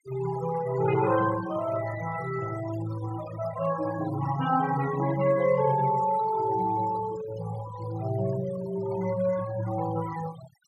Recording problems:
noise reduction artefacts; signal-to-artefact ratio 13 dB

